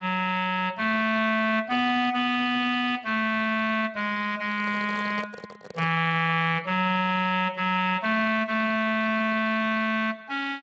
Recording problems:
lossy codec; Speex, log-spectral distance 4 dB
handling noise; from 4.5 to 6 s; peak -7 dB vs average level

